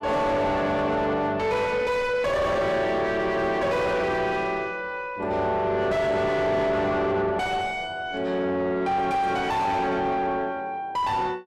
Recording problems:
distortion; soft clipping, signal-to-distortion ratio 5 dB

